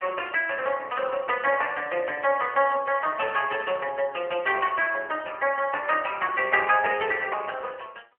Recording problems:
phone line; 340 Hz to 3.1 kHz, AMR-NB

